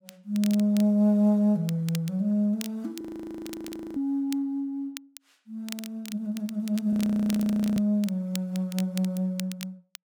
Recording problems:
crackle; vinyl, SNR 17 dB
frozen audio; at 3 s for 1 s and at 7 s for 1 s

